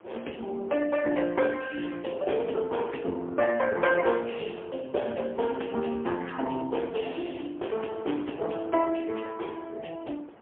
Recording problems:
telephone audio; 240 Hz to 2.1 kHz, AMR-NB, then MP3
wind on the microphone; below 1 kHz, SNR 22 dB

